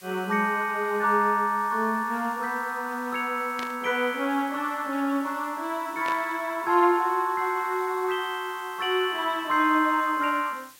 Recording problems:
background hiss; slope +1 dB per octave, SNR 23 dB
static burst; at 3.5 s and at 6 s; peak -6 dB vs average level

